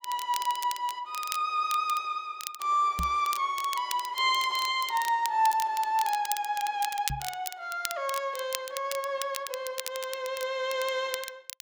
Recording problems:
crackling; vinyl, SNR 10 dB
microphone thump; at 3 s and at 7 s; peak -2 dB vs average level

